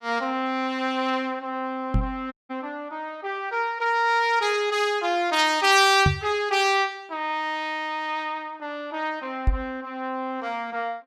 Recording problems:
microphone bump; at 2 s, at 6 s and at 9.5 s; peak +6 dB vs average level
dropout; at 2.5 s

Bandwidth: 16.5 kHz